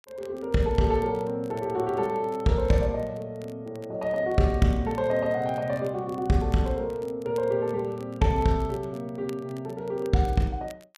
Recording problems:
crackling; vinyl, SNR 28 dB

